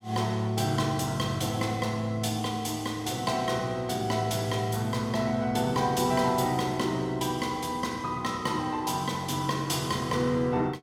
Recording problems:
none

